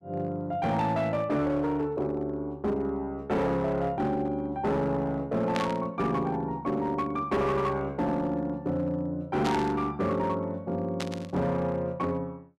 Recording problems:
distortion; hard clipping, signal-to-distortion ratio 12 dB
static burst; at 5.5 s, at 9.5 s and at 11 s; peak 0 dB vs average level

